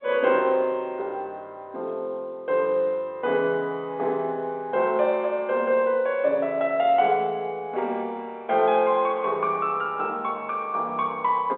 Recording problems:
phone line; 300 Hz to 3.7 kHz, G.711

